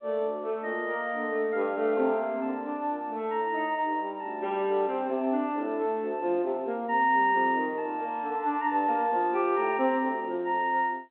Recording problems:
phone line; 240 Hz to 3.5 kHz, G.711

